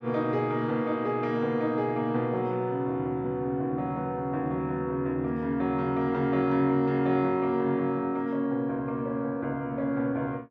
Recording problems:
none

